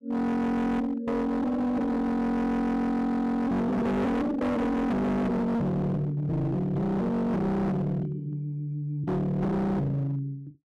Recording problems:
distorted audio; hard clipping, signal-to-distortion ratio 6 dB

